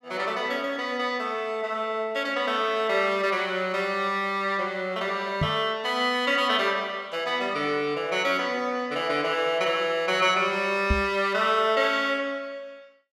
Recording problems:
microphone thump; at 5.5 s and at 11 s; peak +4 dB vs average level

